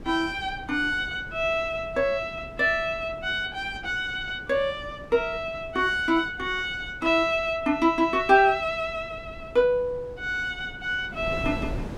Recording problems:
wind noise; below 350 Hz, SNR 17 dB

